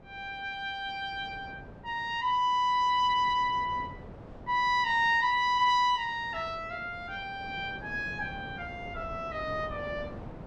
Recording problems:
wind on the microphone; below 550 Hz, SNR 18 dB

